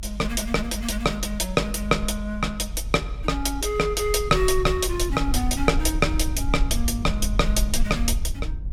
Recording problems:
low-frequency rumble; below 52 Hz, SNR 6 dB

